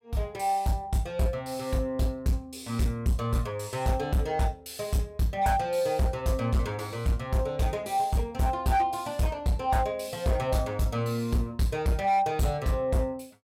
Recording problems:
distorted audio; hard clipping, signal-to-distortion ratio 12 dB

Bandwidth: 16 kHz